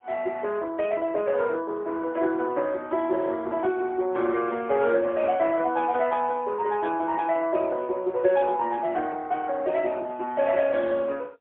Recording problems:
phone line; 300 Hz to 3.4 kHz, AMR-NB, then MP3

